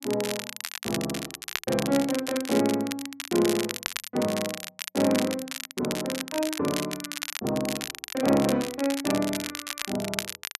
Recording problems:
crackle; vinyl, SNR 5 dB

